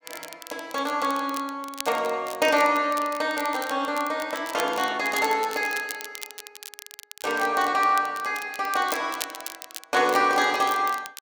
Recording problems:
crackling; vinyl, SNR 14 dB

